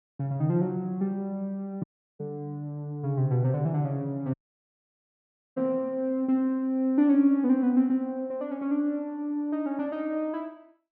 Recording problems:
audio cutting out; at 2 s and at 4.5 s for 1 s

